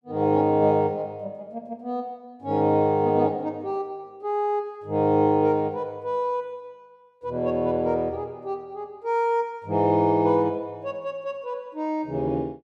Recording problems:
none

